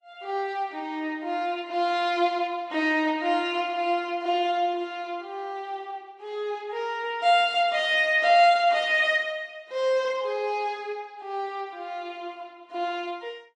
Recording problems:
lossy compression; Vorbis, then AAC, log-spectral distance 2 dB

